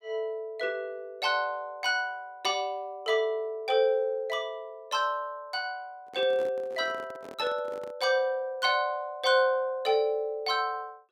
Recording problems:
handling noise; from 6 to 8 s; peak -11 dB vs average level

